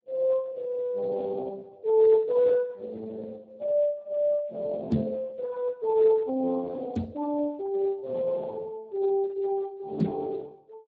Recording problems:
codec artefacts; Speex, then Speex, log-spectral distance 2 dB
microphone thump; at 5 s, at 7 s and at 10 s; peak +7 dB vs average level

